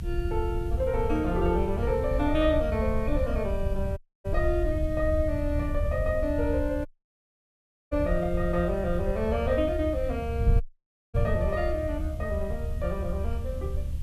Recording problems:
hiss; slope -1 dB per octave, SNR 27 dB
low-frequency rumble; below 74 Hz, SNR 7 dB
wind noise; below 92 Hz, SNR 4 dB
audio cutting out; at 4 s, at 7 s for 1 s and at 11 s for 0.5 s

